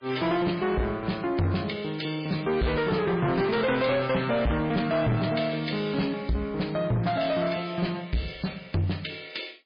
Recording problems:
lossy codec; MP3, log-spectral distance 5 dB, nothing above 4.5 kHz
distorted audio; soft clipping, signal-to-distortion ratio 7 dB

